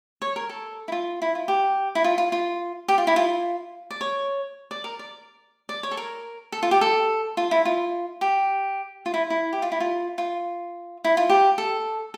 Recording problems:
none

